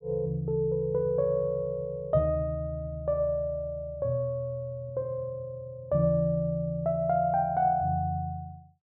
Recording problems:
none

